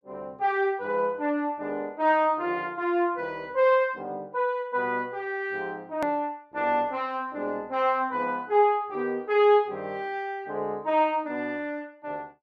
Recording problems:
click at an edit; at 6 s

